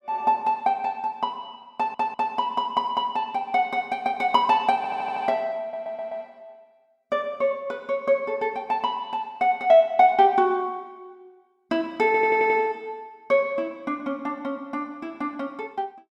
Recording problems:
stutter; 4 times, first at 2 s

